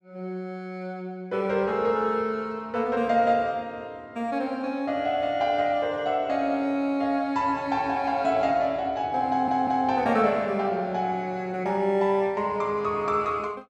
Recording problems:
stutter; at 9.5 s

